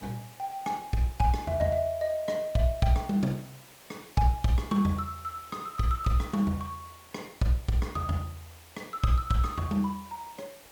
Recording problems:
background hiss; slope -2 dB per octave, SNR 21 dB

